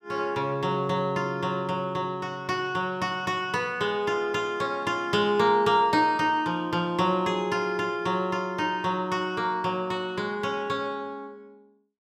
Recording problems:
none

